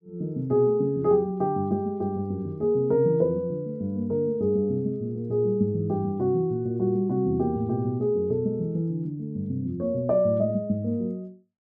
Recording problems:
none

